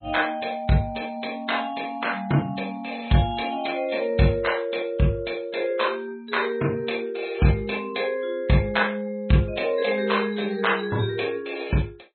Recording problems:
treble missing; nothing above 4.1 kHz
codec artefacts; MP3, log-spectral distance 5 dB

